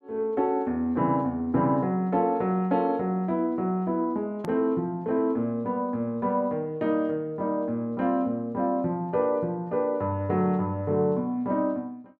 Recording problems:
edit click; at 4.5 s

